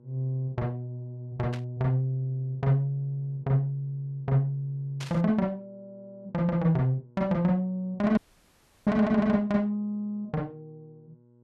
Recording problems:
hum; 60 Hz, harmonics up to 960 Hz, SNR 29 dB
static burst; at 1.5 s and at 5 s; peak -8 dB vs average level
audio cutting out; at 8 s for 0.5 s

